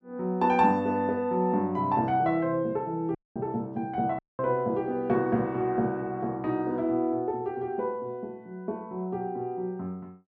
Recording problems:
dropout; at 3 s and at 4 s

